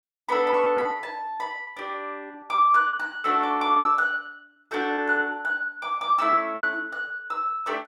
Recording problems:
packet loss; 11% of the sound replaced, filled with repeated pitch periods

